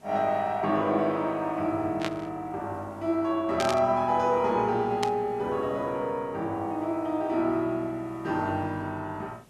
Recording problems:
hiss; SNR 30 dB
burst of static; at 2 s, at 3.5 s and at 5 s; peak 0 dB vs average level

